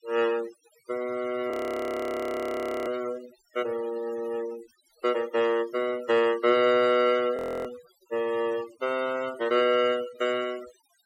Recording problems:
noise reduction artefacts; signal-to-artefact ratio 16 dB
frozen audio; at 1.5 s for 1.5 s and at 7.5 s

